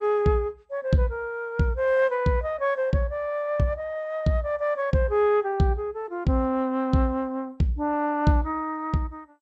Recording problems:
codec artefacts; MP2, log-spectral distance 2 dB

